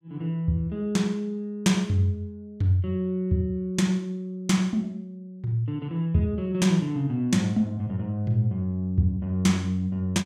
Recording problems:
none

